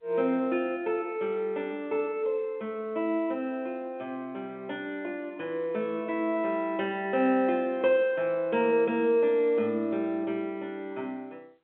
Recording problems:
phone line; 280 Hz to 3.5 kHz, G.711

